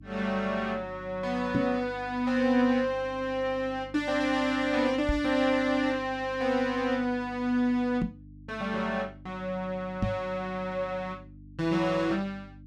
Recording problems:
electrical hum; 50 Hz, harmonics up to 300 Hz, SNR 20 dB
microphone bump; 4 times, first at 1.5 s; peak +4 dB vs average level

